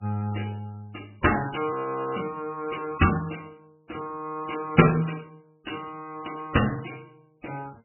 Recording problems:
codec artefacts; MP3, log-spectral distance 7 dB, nothing above 2.9 kHz
audio freezing; at 1.5 s

